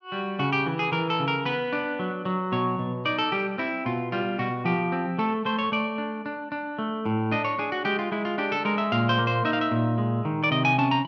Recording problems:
none

